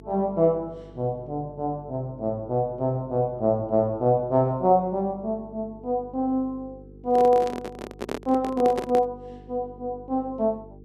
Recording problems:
hum; 50 Hz, harmonics up to 450 Hz, SNR 22 dB
microphone handling noise; from 7 to 9 s; peak -1 dB vs average level

